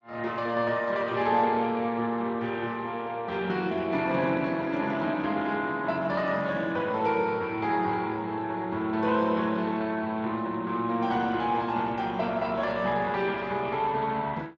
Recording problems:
lossy compression; Speex, log-spectral distance 3 dB

